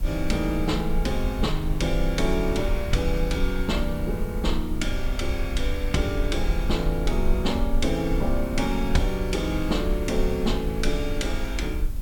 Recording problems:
hiss; slope -1 dB per octave, SNR 21 dB
rumble; below 54 Hz, strongest tone 20 Hz, SNR 3 dB

